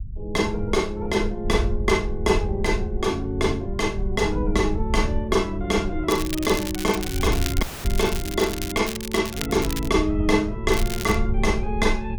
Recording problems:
low-frequency rumble; below 74 Hz, SNR 6 dB
crackling; from 6 to 9 s, from 9 to 10 s and at 11 s; loose cable, SNR 9 dB
audio cutting out; at 7.5 s

